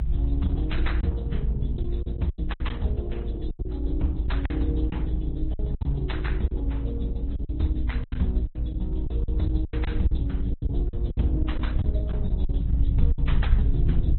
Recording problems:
codec artefacts; Opus, then Vorbis, log-spectral distance 2 dB, nothing above 4 kHz
low-frequency rumble; below 66 Hz, SNR -5 dB
packet loss; 10% of the sound replaced, filled with silence

